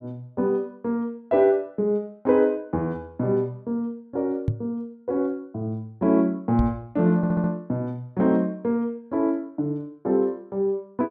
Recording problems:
knock on the microphone; at 4.5 s and at 6.5 s; peak +4 dB vs average level
stutter; at 7 s

